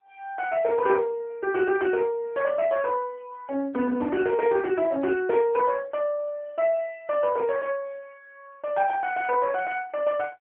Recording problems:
phone line; 150 Hz to 3 kHz, AMR-NB

